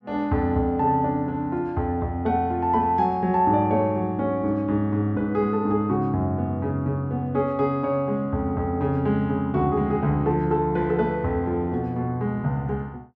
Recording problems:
none

